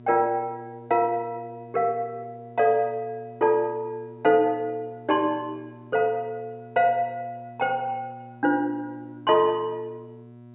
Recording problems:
low-pass filter; nothing above 4 kHz
hum; 60 Hz, harmonics up to 1.3 kHz, SNR 21 dB

